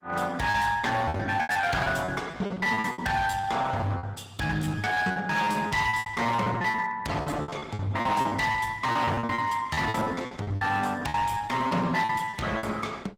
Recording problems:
codec artefacts; Opus, log-spectral distance 4 dB, nothing above 18.3 kHz
distortion; hard clipping, signal-to-distortion ratio 10 dB
lost packets; 20% of the sound replaced, filled with repeated pitch periods

